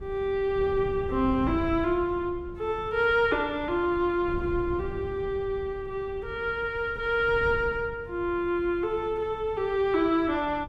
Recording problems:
wind noise; below 150 Hz, SNR 14 dB

